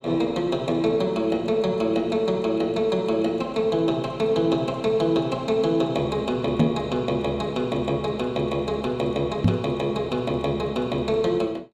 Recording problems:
knock on the microphone; at 6.5 s and at 9.5 s; peak +8 dB vs average level

